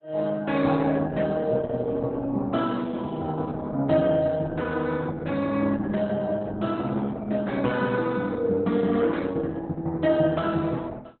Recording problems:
lossy compression; Opus, log-spectral distance 3 dB, nothing above 4 kHz

